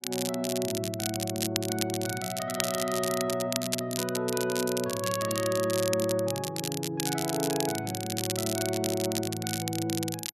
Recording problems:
crackle; vinyl, SNR 3 dB

